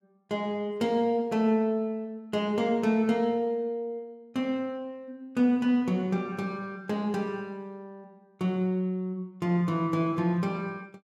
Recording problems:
none

